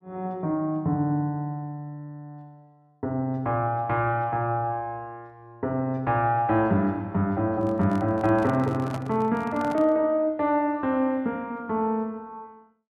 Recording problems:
microphone handling noise; from 7.5 to 10 s; peak -6 dB vs average level

